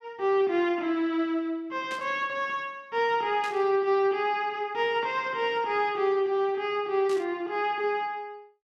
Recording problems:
burst of static; at 2 s, at 3.5 s and at 7 s; peak -11 dB vs average level

